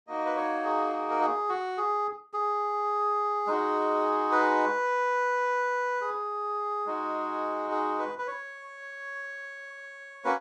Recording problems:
none

